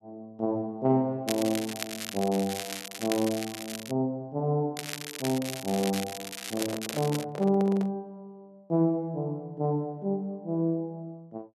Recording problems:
crackling; from 1.5 to 4 s and from 5 to 7 s; loose cable, SNR 7 dB
handling noise; from 6.5 to 8 s; peak -3 dB vs average level

